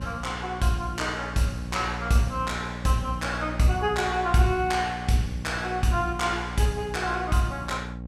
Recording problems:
hum; 60 Hz, harmonics up to 780 Hz, SNR 10 dB

